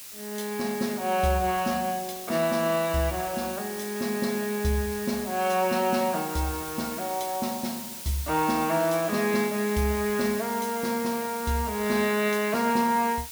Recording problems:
background hiss; slope +2 dB per octave, SNR 10 dB

